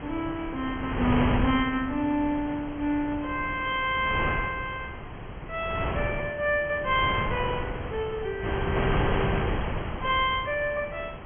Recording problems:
treble cut off; nothing above 3.2 kHz
wind on the microphone; below 890 Hz, SNR 4 dB

